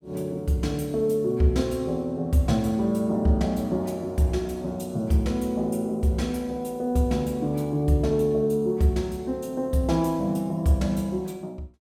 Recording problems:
none

